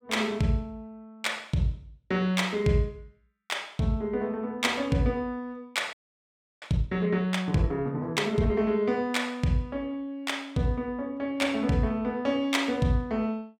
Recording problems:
frozen audio; at 6 s for 0.5 s

